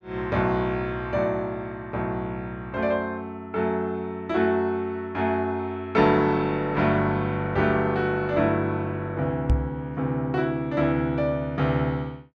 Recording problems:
microphone thump; at 9.5 s; peak +6 dB vs average level

